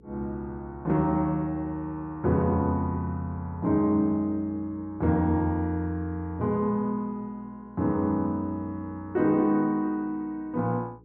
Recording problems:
electrical hum; 60 Hz, harmonics up to 480 Hz, SNR 27 dB

